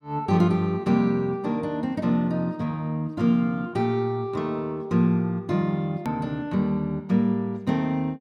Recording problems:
click at an edit; at 6 s

